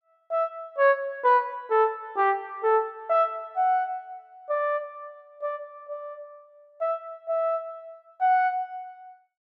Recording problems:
none

